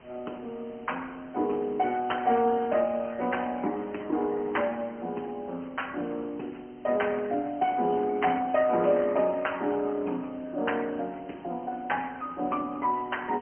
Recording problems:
phone line; 190 Hz to 3.1 kHz, AMR-NB
hiss; SNR 27 dB

